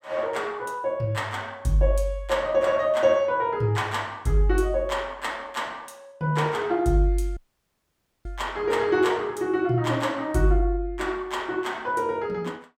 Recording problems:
audio cutting out; at 7.5 s for 1 s

